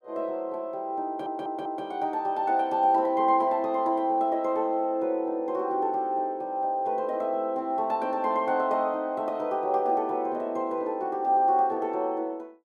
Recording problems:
audio stuttering; at 1 s

